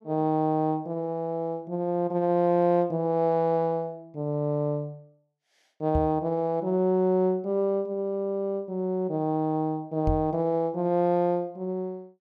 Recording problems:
microphone thump; at 6 s and at 10 s; peak +2 dB vs average level

